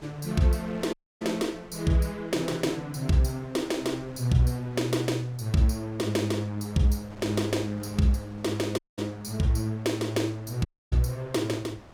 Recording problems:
wind on the microphone; below 1 kHz, SNR 22 dB
audio cutting out; at 1 s, at 9 s and at 11 s

